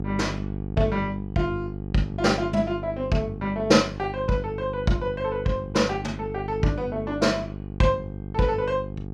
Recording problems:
hum; 50 Hz, harmonics up to 850 Hz, SNR 9 dB

